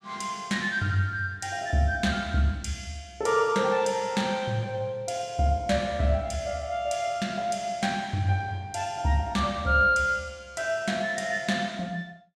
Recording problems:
none

